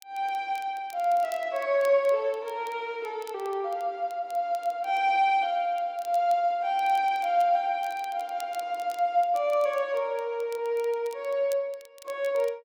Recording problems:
crackling; vinyl, SNR 25 dB

